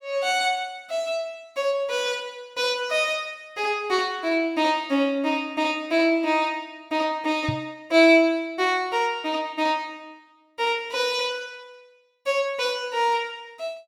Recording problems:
microphone thump; at 7.5 s; peak 0 dB vs average level

